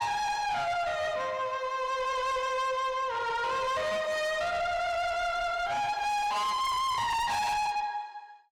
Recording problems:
distorted audio; soft clipping, signal-to-distortion ratio 6 dB

